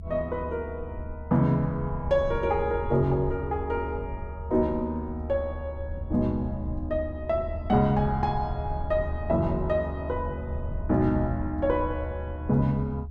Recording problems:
rumble; below 78 Hz, strongest tone 74 Hz, SNR 8 dB

